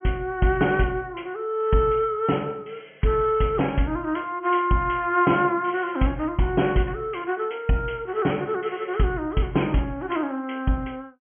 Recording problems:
treble missing; nothing above 3.3 kHz

